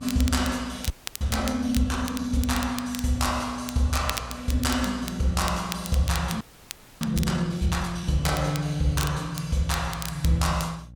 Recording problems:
hum; 60 Hz, harmonics up to 540 Hz, SNR 19 dB
crackle; vinyl, SNR 12 dB
frozen audio; at 1 s and at 6.5 s for 0.5 s

